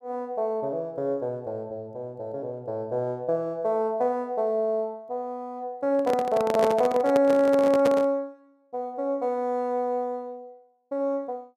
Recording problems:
handling noise; from 6 to 8 s; peak +3 dB vs average level

